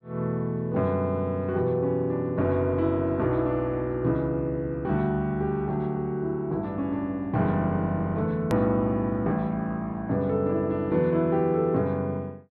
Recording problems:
treble missing; nothing above 5.5 kHz
click at an edit; at 8.5 s

